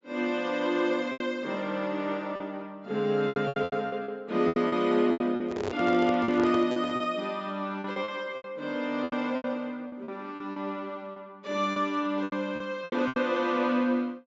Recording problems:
treble cut off; nothing above 8 kHz
lost packets; 12% of the sound replaced, filled with repeated pitch periods
handling noise; from 5.5 to 7 s; peak 0 dB vs average level

